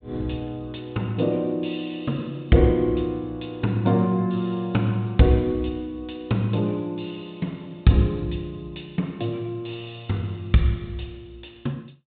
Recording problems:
low-pass filter; nothing above 4 kHz

